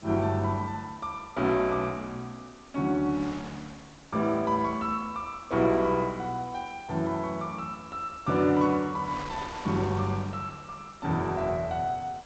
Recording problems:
lossy codec; G.722, log-spectral distance 6 dB, nothing above 7.3 kHz
background hiss; slope +2 dB per octave, SNR 28 dB
wind on the microphone; below 2.5 kHz, SNR 20 dB

